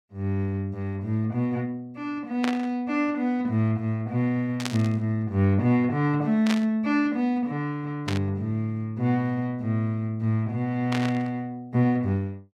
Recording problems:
burst of static; 5 times, first at 2.5 s; peak 0 dB vs average level

